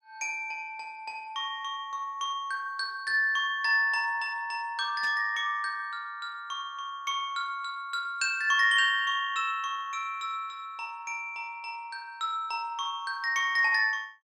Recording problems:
burst of static; at 5 s; peak -11 dB vs average level

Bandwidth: 13.5 kHz